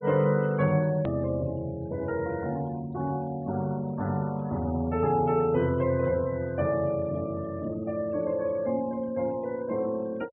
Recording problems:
treble cut off; nothing above 4 kHz
denoising artefacts; signal-to-artefact ratio 24 dB
click at an edit; at 1 s

